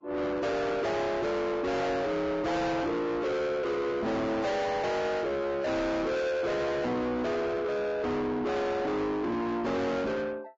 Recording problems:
lossy compression; Vorbis, log-spectral distance 2 dB, nothing above 7.3 kHz
distortion; soft clipping, signal-to-distortion ratio 7 dB

